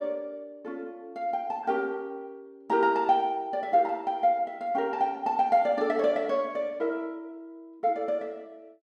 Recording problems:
none

